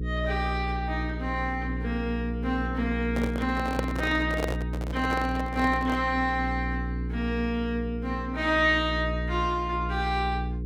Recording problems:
electrical hum; 60 Hz, harmonics up to 480 Hz, SNR 5 dB
handling noise; from 3 to 6 s; peak +3 dB vs average level

